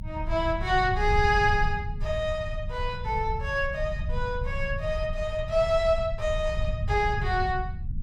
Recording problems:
low-frequency rumble; below 94 Hz, SNR 6 dB

